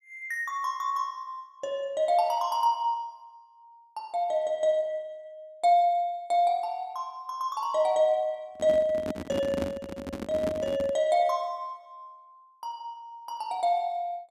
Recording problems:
microphone handling noise; from 8.5 to 11 s; peak 0 dB vs average level

